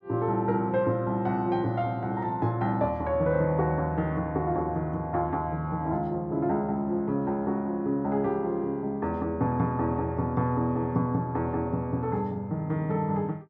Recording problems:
none

